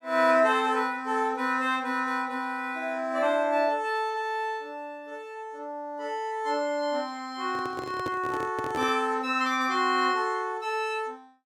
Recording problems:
handling noise; from 7.5 to 9 s; peak -3 dB vs average level

